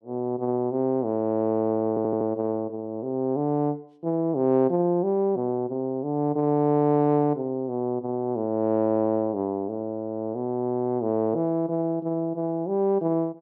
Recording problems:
audio stuttering; at 2 s

